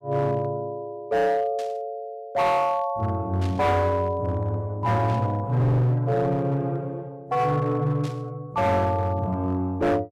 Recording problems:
distortion; hard clipping, signal-to-distortion ratio 10 dB
burst of static; 4 times, first at 1.5 s; peak -13 dB vs average level

